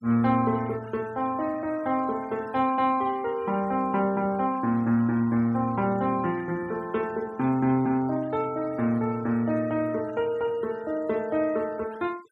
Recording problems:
noise reduction artefacts; signal-to-artefact ratio 24 dB

